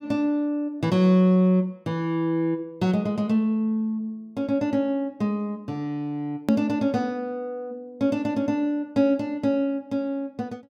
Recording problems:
hard cut with a click; at 6.5 s

